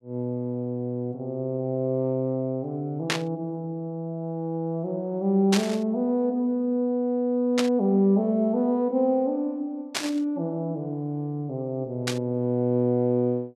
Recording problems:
static burst; 5 times, first at 3 s; peak +5 dB vs average level

